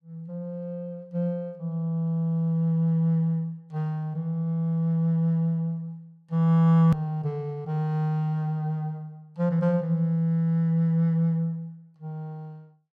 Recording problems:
edit click; at 7 s

